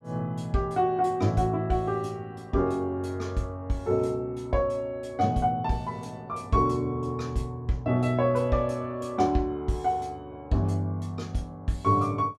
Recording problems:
none

